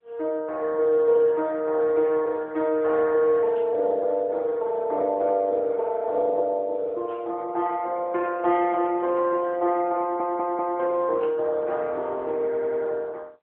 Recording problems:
phone line; 280 Hz to 3.1 kHz, AMR-NB
stutter; at 10 s and at 12 s

